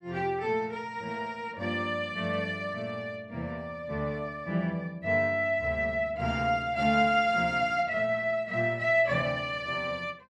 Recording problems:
none

